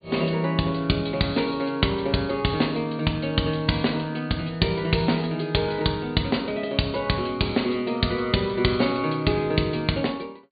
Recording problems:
treble missing; nothing above 4.7 kHz

